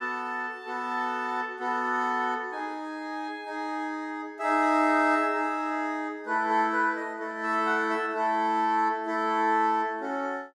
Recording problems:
none

